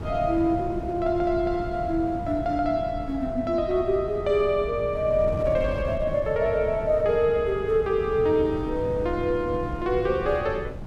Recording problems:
wind noise; below 240 Hz, SNR 10 dB

